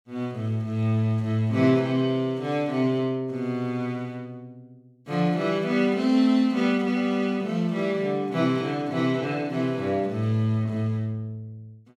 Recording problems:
none

